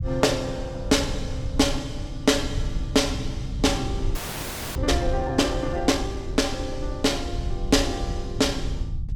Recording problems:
low-frequency rumble; below 92 Hz, SNR 7 dB
frozen audio; at 4 s for 0.5 s

